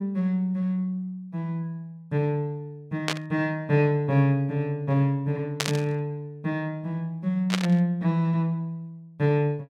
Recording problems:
burst of static; at 3 s, at 5.5 s and at 7.5 s; peak +5 dB vs average level

